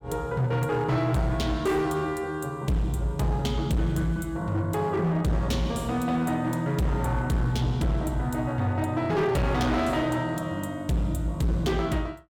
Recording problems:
distorted audio; hard clipping, signal-to-distortion ratio 11 dB

